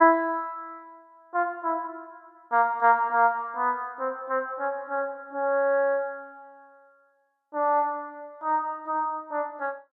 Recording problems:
none

